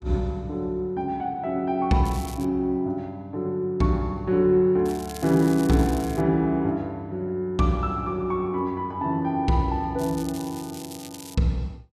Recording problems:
crackle; at 2 s, from 5 to 6 s and from 10 to 11 s; loose cable, SNR 17 dB

